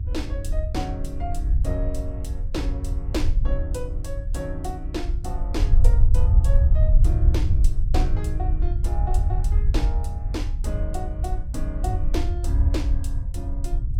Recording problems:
hum; 50 Hz, harmonics up to 350 Hz, SNR 15 dB
rumble; below 70 Hz, SNR -9 dB

